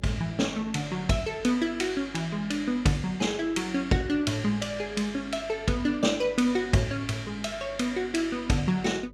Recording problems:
hum; 50 Hz, harmonics up to 600 Hz, SNR 23 dB

